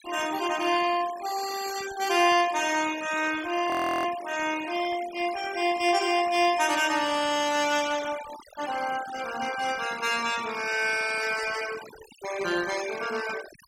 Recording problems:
noise reduction artefacts; signal-to-artefact ratio 13 dB
frozen audio; at 3.5 s

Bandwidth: 16.5 kHz